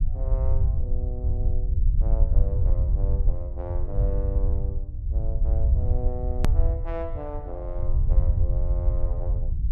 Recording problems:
rumble; below 72 Hz, SNR -12 dB
click at an edit; at 6.5 s

